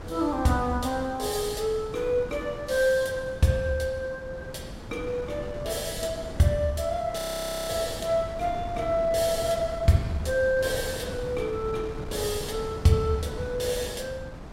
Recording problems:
wind on the microphone; below 430 Hz, SNR 12 dB
audio freezing; at 7 s for 0.5 s

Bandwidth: 16 kHz